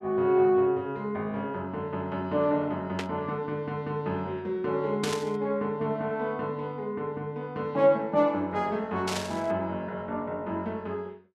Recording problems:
static burst; at 3 s, at 5 s and at 9 s; peak 0 dB vs average level

